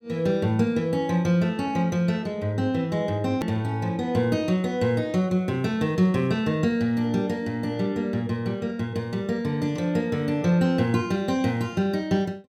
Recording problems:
hard cut with a click; at 3.5 s

